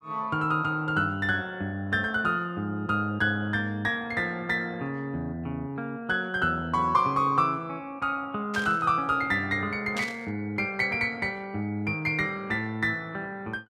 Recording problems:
static burst; at 8.5 s and at 10 s; peak -4 dB vs average level

